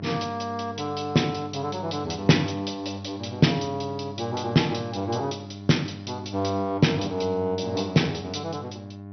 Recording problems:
codec artefacts; MP2, log-spectral distance 7 dB, nothing above 6 kHz
hum; 50 Hz, harmonics up to 1.1 kHz, SNR 13 dB

